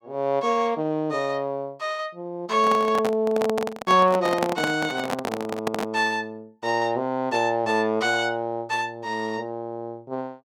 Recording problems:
microphone handling noise; from 2.5 to 6 s; peak +3 dB vs average level

